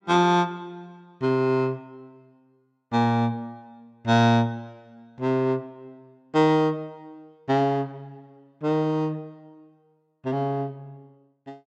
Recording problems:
none

